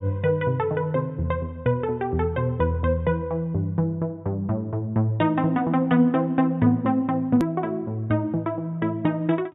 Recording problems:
treble missing; nothing above 4 kHz
click at an edit; at 7.5 s

